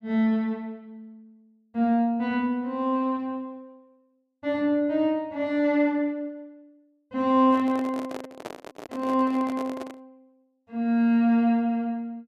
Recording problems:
microphone handling noise; from 7.5 to 10 s; peak -7 dB vs average level

